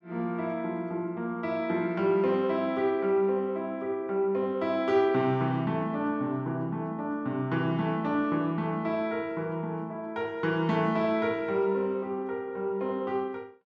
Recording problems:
none

